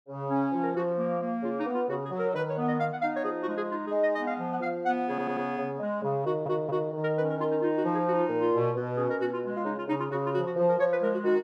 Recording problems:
audio stuttering; at 5 s and at 6 s

